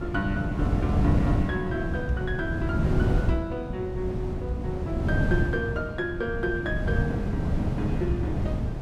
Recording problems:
wind noise; below 210 Hz, SNR -3 dB

